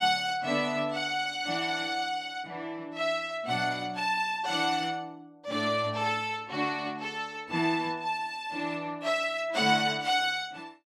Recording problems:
none

